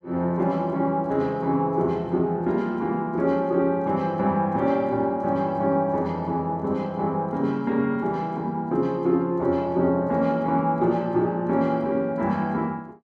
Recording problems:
none

